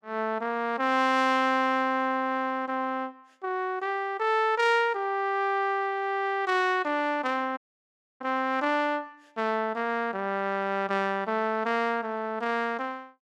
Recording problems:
dropout; at 7.5 s for 0.5 s

